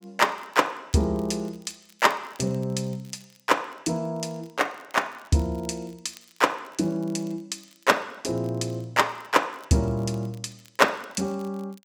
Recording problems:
crackling; vinyl, SNR 29 dB

